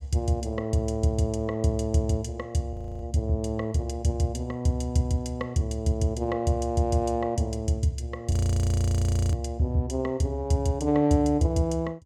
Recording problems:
frozen audio; at 2.5 s and at 8.5 s for 1 s

